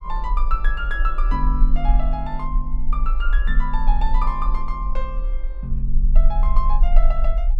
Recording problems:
low-frequency rumble; below 38 Hz, strongest tone 26 Hz, SNR -6 dB

